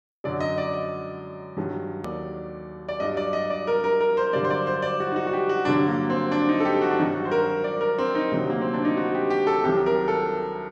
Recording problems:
edit click; at 2 s

